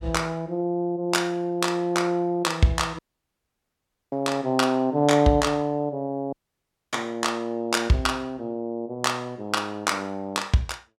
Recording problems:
dropout; at 3 s for 1 s and at 6.5 s for 0.5 s

